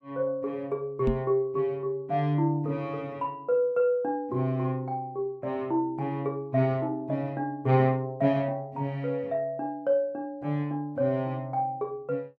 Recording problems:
microphone bump; at 1 s; peak +4 dB vs average level

